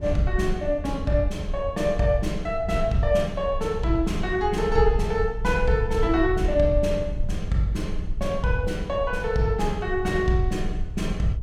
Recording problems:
rumble; below 68 Hz, SNR 7 dB

